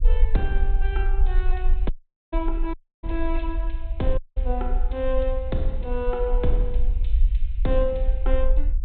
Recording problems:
treble cut off; nothing above 4 kHz
rumble; below 44 Hz, SNR -3 dB
dropout; at 2 s, at 2.5 s and at 4 s

